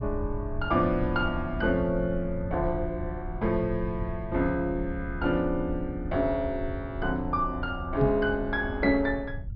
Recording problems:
low-pass filter; nothing above 5.5 kHz
rumble; below 92 Hz, SNR 9 dB
knock on the microphone; at 8 s; peak +4 dB vs average level

